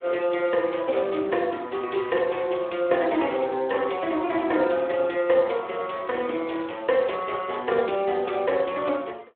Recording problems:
telephone audio; 280 Hz to 3.5 kHz, Speex

